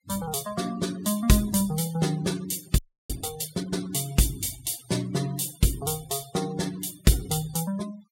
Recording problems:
noise reduction artefacts; signal-to-artefact ratio 18 dB
audio freezing; at 3 s

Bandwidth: 16 kHz